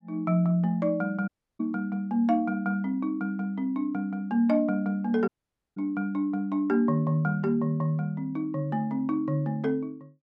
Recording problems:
audio cutting out; at 1.5 s and at 5.5 s

